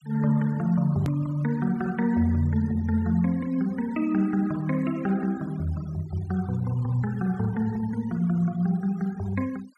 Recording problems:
denoising artefacts; signal-to-artefact ratio 24 dB
hard cut with a click; at 1 s

